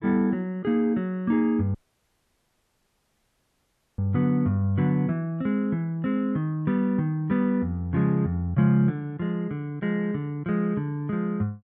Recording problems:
audio cutting out; at 2 s for 2 s

